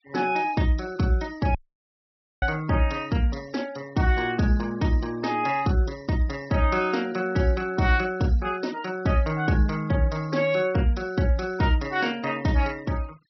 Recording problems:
treble cut off; nothing above 5.7 kHz
denoising artefacts; signal-to-artefact ratio 22 dB
audio cutting out; at 1.5 s for 1 s

